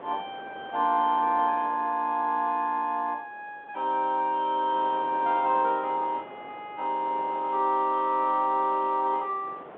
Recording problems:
phone line; 260 Hz to 3.7 kHz, G.711
wind on the microphone; below 1 kHz, SNR 21 dB

